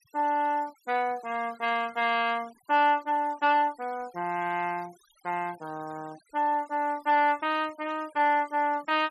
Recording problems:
noise reduction artefacts; signal-to-artefact ratio 25 dB

